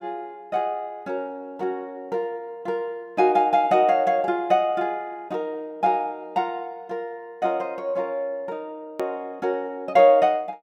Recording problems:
click at an edit; at 9 s

